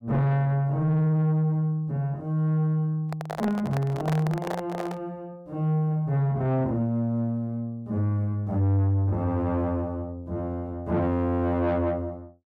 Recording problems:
distortion; soft clipping, signal-to-distortion ratio 11 dB
microphone handling noise; from 3 to 5 s; peak -1 dB vs average level

